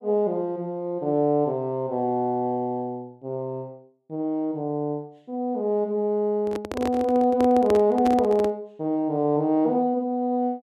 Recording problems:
microphone handling noise; from 6.5 to 8.5 s; peak 0 dB vs average level

